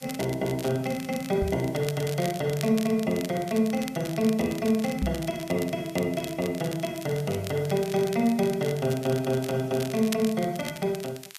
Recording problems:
background hiss; slope +3 dB per octave, SNR 24 dB
crackling; vinyl, SNR 14 dB
knock on the microphone; at 1.5 s and at 5 s; peak +2 dB vs average level

